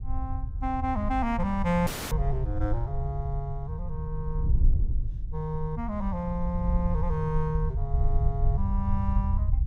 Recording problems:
low-frequency rumble; below 92 Hz, SNR 3 dB
wind noise; below 68 Hz, SNR 2 dB
dropout; at 2 s

